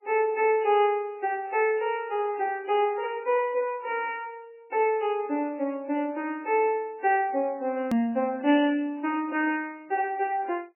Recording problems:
codec artefacts; MP3, log-spectral distance 2 dB, nothing above 2.4 kHz
click at an edit; at 8 s

